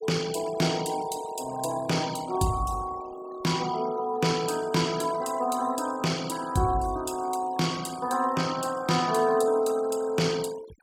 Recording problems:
noise reduction artefacts; signal-to-artefact ratio 16 dB

